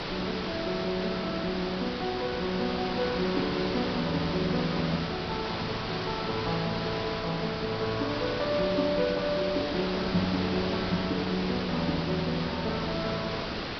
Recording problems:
treble missing; nothing above 5.5 kHz
background hiss; slope -3 dB per octave, SNR 3 dB

